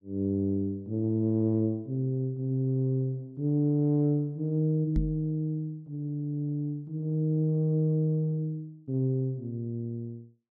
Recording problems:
microphone thump; at 5 s; peak +3 dB vs average level

